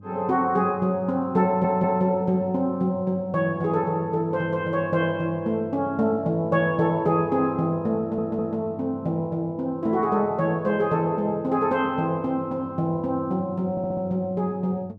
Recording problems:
hum; 50 Hz, harmonics up to 600 Hz, SNR 19 dB
audio stuttering; at 1.5 s, at 8 s and at 14 s

